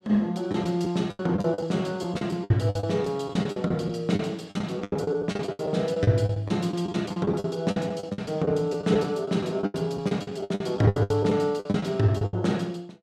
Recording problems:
lost packets; 17% of the sound replaced, filled with the last packet

